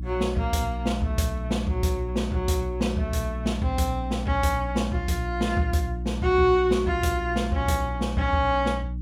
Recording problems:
electrical hum; 60 Hz, harmonics up to 300 Hz, SNR 7 dB

